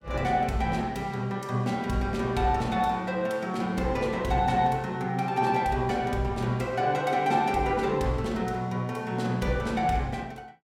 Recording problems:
none

